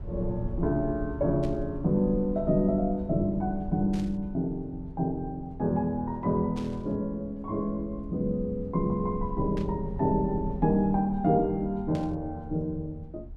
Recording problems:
rumble; below 74 Hz, SNR 13 dB
burst of static; 5 times, first at 1.5 s; peak -13 dB vs average level

